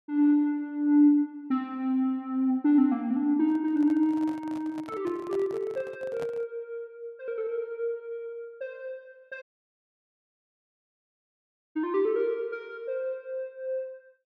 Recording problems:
microphone handling noise; from 3.5 to 6.5 s; peak -10 dB vs average level
dropout; at 9.5 s for 2.5 s

